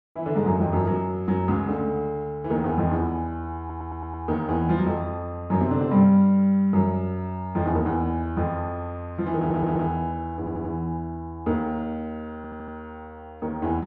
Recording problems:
audio stuttering; 4 times, first at 3.5 s

